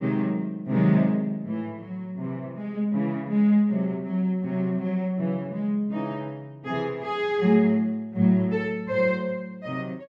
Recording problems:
none

